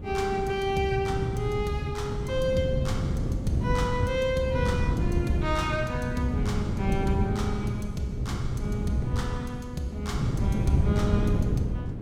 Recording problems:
wind on the microphone; below 190 Hz, SNR 0 dB

